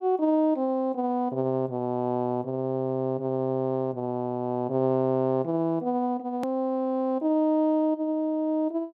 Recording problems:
click at an edit; at 6.5 s

